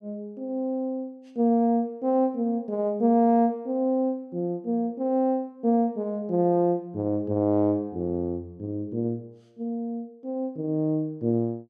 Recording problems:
none

